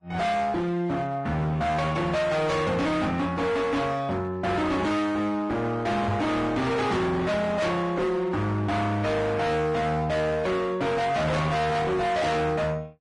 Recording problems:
codec artefacts; Vorbis, log-spectral distance 2 dB, nothing above 10.4 kHz
distortion; hard clipping, uneven, signal-to-distortion ratio 6 dB
knock on the microphone; at 6 s; peak +1 dB vs average level

